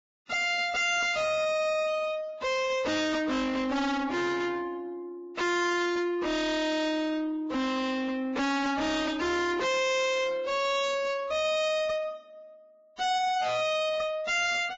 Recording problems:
codec artefacts; Vorbis, log-spectral distance 3 dB
distortion; soft clipping, signal-to-distortion ratio 6 dB

